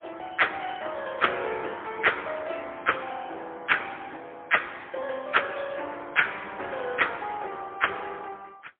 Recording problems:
phone line; 320 Hz to 3.4 kHz, AMR-NB, then MP3

